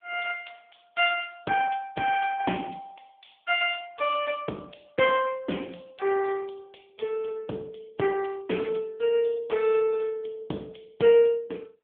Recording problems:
telephone audio; 320 Hz to 3.3 kHz, AMR-NB

